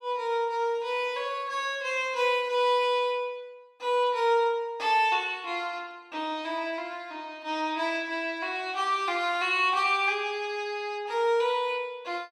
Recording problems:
none

